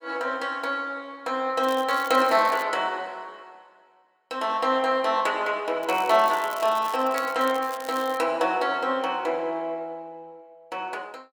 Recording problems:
crackle; from 1.5 to 2.5 s and from 6 to 8 s; loose cable, SNR 18 dB

